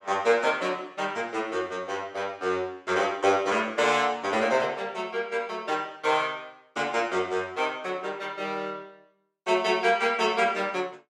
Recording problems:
none

